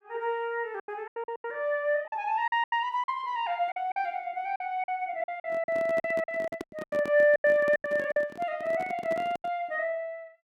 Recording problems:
packet loss; 12% of the sound replaced, filled with silence
handling noise; from 5.5 to 9.5 s; peak -4 dB vs average level

